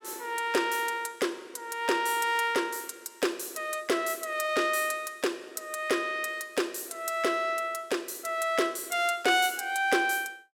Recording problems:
none

